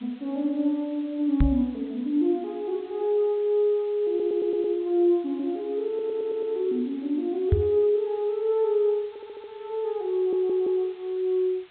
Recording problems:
low-pass filter; nothing above 4 kHz
hiss; SNR 28 dB
knock on the microphone; at 1.5 s and at 7.5 s; peak +7 dB vs average level
stutter; 4 times, first at 4 s

